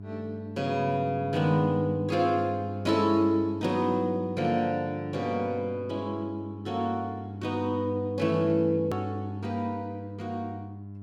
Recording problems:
electrical hum; 50 Hz, harmonics up to 700 Hz, SNR 10 dB
hard cut with a click; at 9 s

